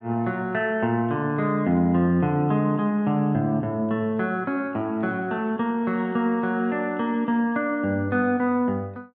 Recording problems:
none

